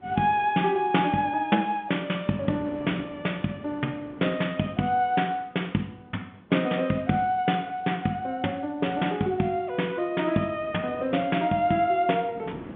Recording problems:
telephone audio; 130 Hz to 3.5 kHz, G.711
wind noise; below 490 Hz, SNR 20 dB

